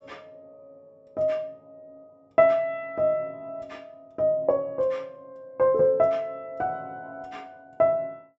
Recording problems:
low-pass filter; nothing above 8 kHz

